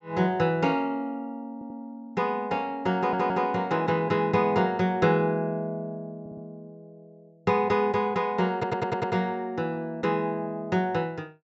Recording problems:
treble missing; nothing above 8 kHz
audio stuttering; 4 times, first at 1.5 s

